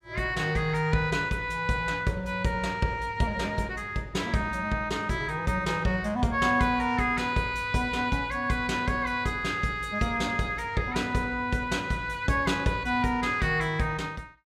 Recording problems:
none

